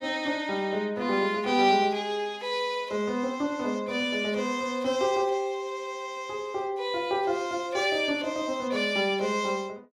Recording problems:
none

